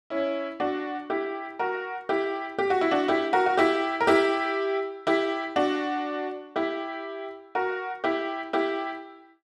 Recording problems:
none

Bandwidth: 12.5 kHz